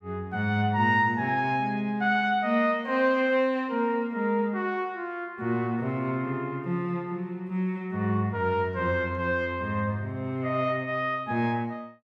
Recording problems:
none

